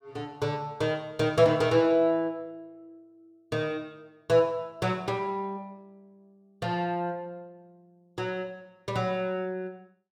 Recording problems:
none

